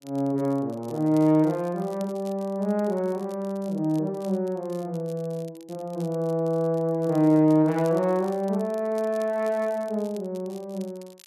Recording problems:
crackling; vinyl, SNR 27 dB

